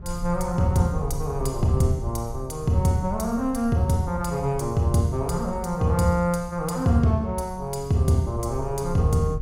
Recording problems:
rumble; below 84 Hz, SNR 13 dB

